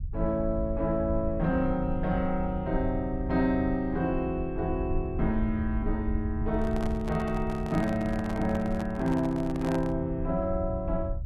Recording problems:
rumble; below 80 Hz, SNR 7 dB
microphone handling noise; from 6.5 to 10 s; peak -5 dB vs average level

